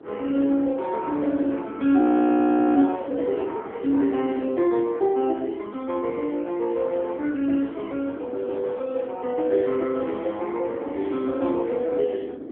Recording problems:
telephone audio; 240 Hz to 3.3 kHz, AMR-NB
wind noise; below 530 Hz, SNR 14 dB
frozen audio; at 2 s for 1 s

